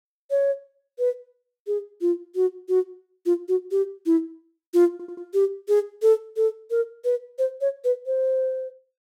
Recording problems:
stutter; at 5 s

